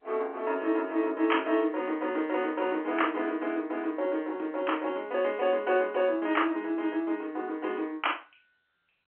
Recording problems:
telephone audio; 260 Hz to 3.3 kHz, G.711

